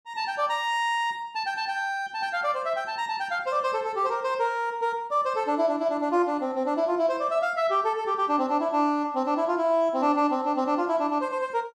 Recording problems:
none

